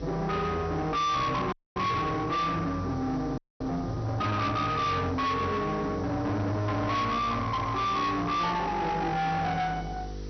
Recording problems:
treble cut off; nothing above 6 kHz
distorted audio; soft clipping, signal-to-distortion ratio 8 dB
hum; 50 Hz, harmonics up to 2.4 kHz, SNR 13 dB
hiss; SNR 23 dB
audio freezing; at 1.5 s and at 3.5 s

